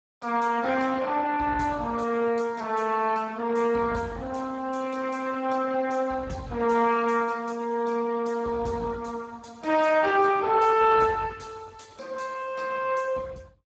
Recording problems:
lossy codec; Speex, log-spectral distance 4 dB, nothing above 7.3 kHz

